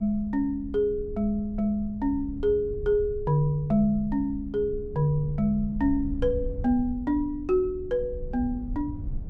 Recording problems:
low-frequency rumble; below 82 Hz, SNR 12 dB

